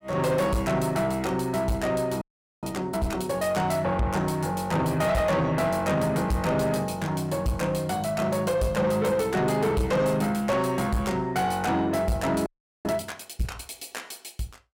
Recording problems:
distortion; soft clipping, signal-to-distortion ratio 10 dB
frozen audio; at 2 s and at 12 s

